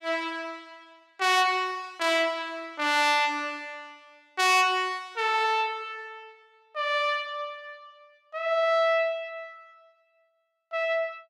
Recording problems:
none

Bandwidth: 16.5 kHz